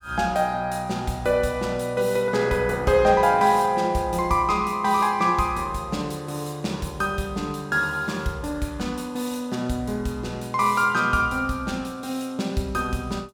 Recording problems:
none

